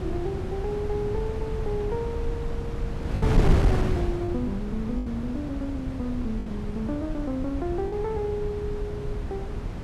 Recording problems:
wind on the microphone; below 180 Hz, SNR -1 dB
lost packets; 3% of the sound replaced, filled with the last packet

